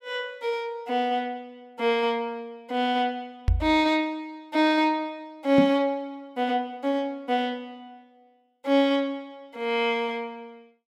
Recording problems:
knock on the microphone; at 3.5 s and at 5.5 s; peak +6 dB vs average level

